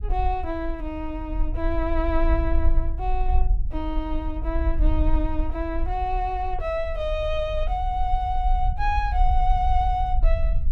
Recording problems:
rumble; below 50 Hz, strongest tone 24 Hz, SNR 0 dB

